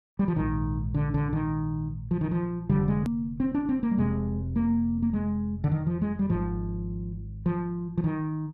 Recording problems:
edit click; at 3 s

